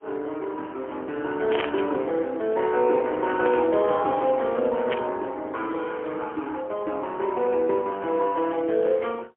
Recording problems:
phone line; 260 Hz to 3.3 kHz, AMR-NB, then MP3
static burst; at 1.5 s, at 3.5 s and at 5 s; peak -1 dB vs average level

